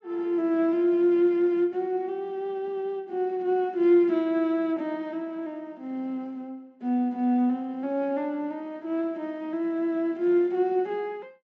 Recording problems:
low-pass filter; nothing above 8 kHz

